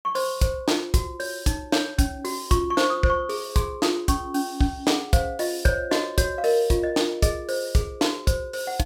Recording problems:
none

